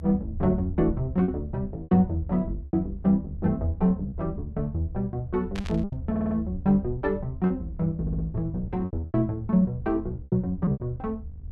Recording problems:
electrical hum; 50 Hz, harmonics up to 750 Hz, SNR 24 dB
rumble; below 78 Hz, SNR 12 dB
lost packets; 8% of the sound replaced, filled with repeated pitch periods
static burst; at 5.5 s; peak -8 dB vs average level
audio stuttering; at 6 s and at 8 s

